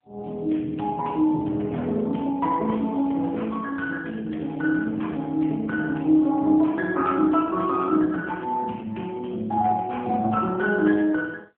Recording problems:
phone line; 170 Hz to 3.2 kHz, AMR-NB

